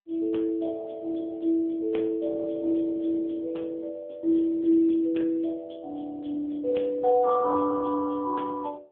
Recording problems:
phone line; 170 Hz to 3.4 kHz, AMR-NB

